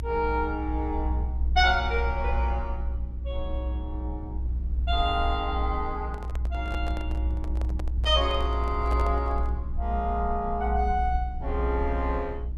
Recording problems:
hum; 60 Hz, harmonics up to 360 Hz, SNR 16 dB
low-frequency rumble; below 62 Hz, strongest tone 60 Hz, SNR 2 dB
handling noise; from 6 to 9.5 s; peak -4 dB vs average level

